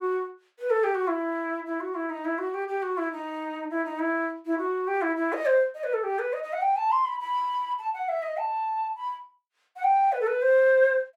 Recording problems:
none

